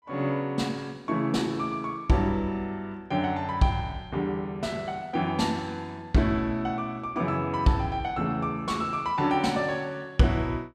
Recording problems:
none

